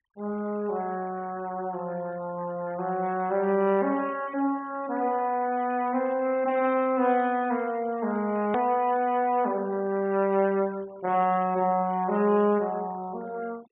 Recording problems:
treble missing; nothing above 4 kHz
denoising artefacts; signal-to-artefact ratio 24 dB
edit click; at 8.5 s

